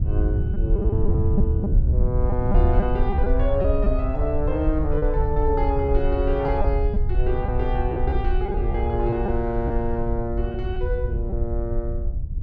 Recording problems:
rumble; below 66 Hz, SNR 0 dB
wind on the microphone; below 110 Hz, SNR 3 dB
lost packets; 6% of the sound replaced, filled with repeated pitch periods

